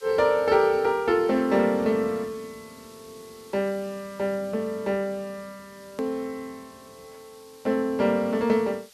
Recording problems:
hiss; slope +4 dB per octave, SNR 26 dB
click at an edit; at 6 s

